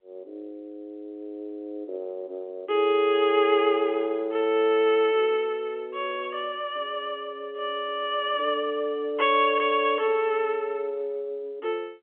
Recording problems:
telephone audio; 300 Hz to 3.3 kHz, G.711

